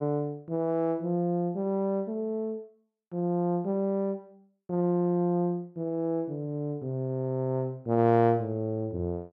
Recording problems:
none

